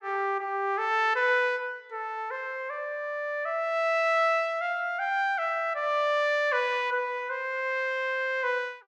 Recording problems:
none

